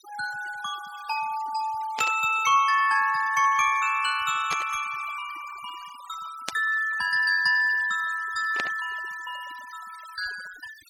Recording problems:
noise reduction artefacts; signal-to-artefact ratio 19 dB
static burst; 4 times, first at 2 s; peak -2 dB vs average level

